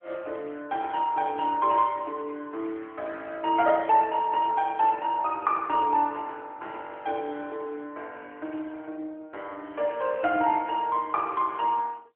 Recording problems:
telephone audio; 260 Hz to 3.6 kHz, AMR-NB

